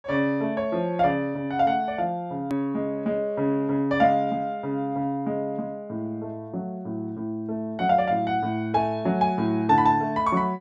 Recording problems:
edit click; at 2.5 s

